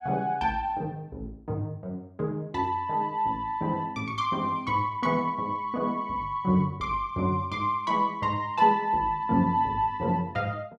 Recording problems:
none

